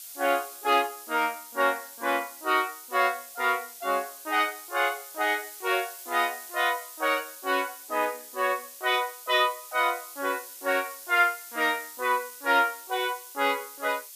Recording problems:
background hiss; slope +6 dB per octave, SNR 14 dB

